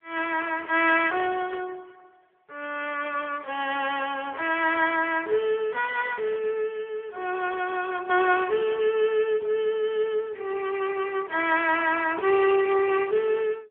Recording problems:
phone line; 340 Hz to 3.3 kHz, AMR-NB

